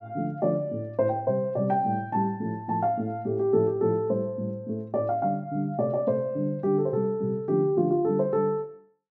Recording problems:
none

